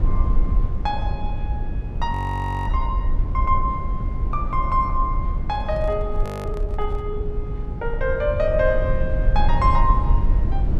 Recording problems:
rumble; below 70 Hz, SNR 0 dB
frozen audio; at 2 s for 0.5 s and at 6 s
microphone handling noise; from 5.5 to 7 s; peak -11 dB vs average level

